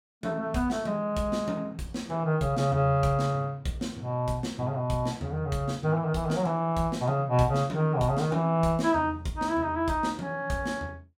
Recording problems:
none

